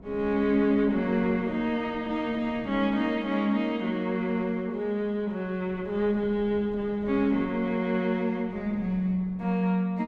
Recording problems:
wind on the microphone; below 370 Hz, SNR 21 dB

